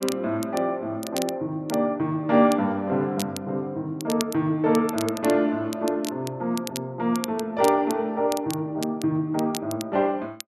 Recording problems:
crackle; vinyl, SNR 14 dB

